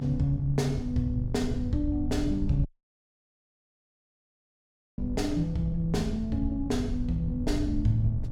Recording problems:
electrical hum; 50 Hz, harmonics up to 900 Hz, SNR 14 dB
low-frequency rumble; below 100 Hz, SNR 6 dB
audio cutting out; at 2.5 s for 2.5 s

